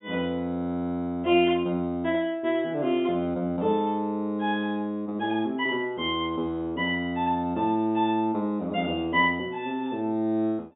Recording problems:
low-pass filter; nothing above 4 kHz

